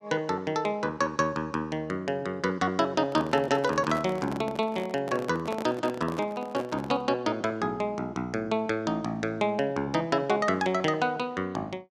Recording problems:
handling noise; from 3 to 7 s; peak -4 dB vs average level

